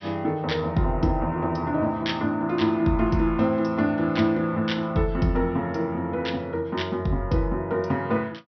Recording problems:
low-pass filter; nothing above 5.9 kHz

